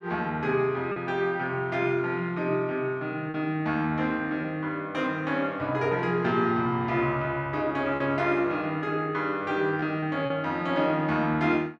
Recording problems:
packet loss; 2% of the sound replaced, filled with repeated pitch periods

